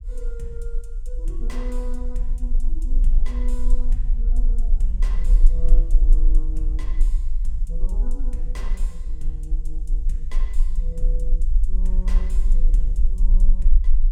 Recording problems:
low-frequency rumble; below 36 Hz, strongest tone 22 Hz, SNR -15 dB

